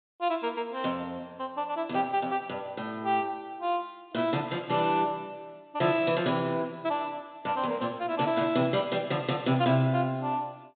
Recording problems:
treble missing; nothing above 4 kHz

